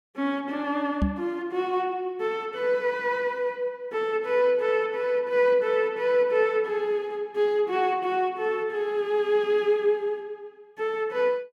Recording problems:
microphone thump; at 1 s; peak +4 dB vs average level

